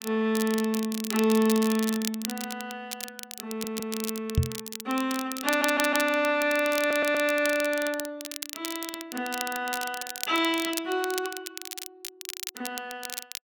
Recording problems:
crackling; vinyl, SNR 9 dB
stutter; at 3.5 s, at 5.5 s and at 7 s
knock on the microphone; at 4.5 s; peak +7 dB vs average level

